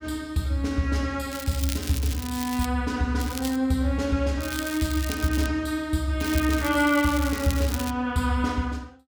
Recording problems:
crackling; 4 times, first at 1.5 s; loose cable, SNR 10 dB

